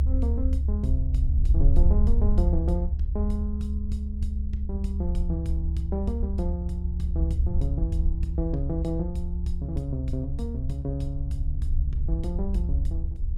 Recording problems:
rumble; below 70 Hz, SNR -5 dB

